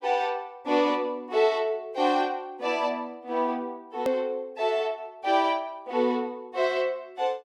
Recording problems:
edit click; at 4 s

